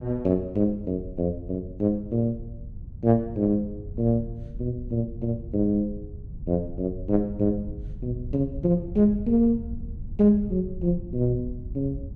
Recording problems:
rumble; below 100 Hz, SNR 13 dB

